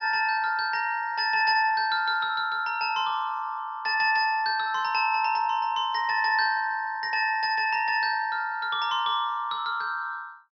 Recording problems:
treble missing; nothing above 5.8 kHz

